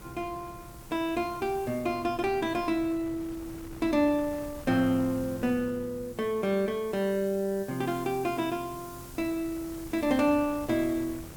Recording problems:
background hiss; SNR 20 dB
wind noise; below 480 Hz, SNR 19 dB

